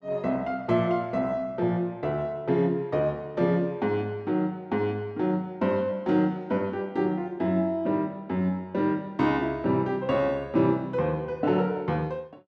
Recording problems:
none

